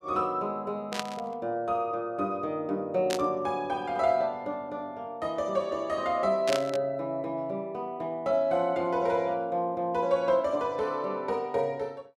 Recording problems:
static burst; at 1 s, at 3 s and at 6.5 s; peak +2 dB vs average level

